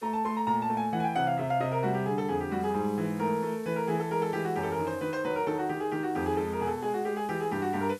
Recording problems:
background hiss; slope +1 dB per octave, SNR 25 dB

